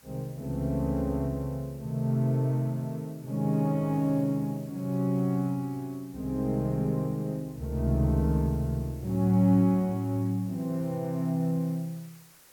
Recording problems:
hiss; slope -1 dB per octave, SNR 26 dB

